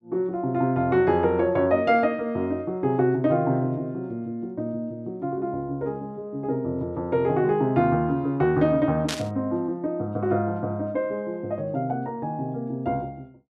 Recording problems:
static burst; at 9 s; peak 0 dB vs average level

